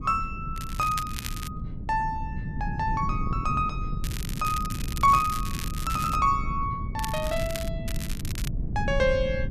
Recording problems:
wind on the microphone; below 150 Hz, SNR 6 dB
crackling; 4 times, first at 0.5 s; loose cable, SNR 11 dB

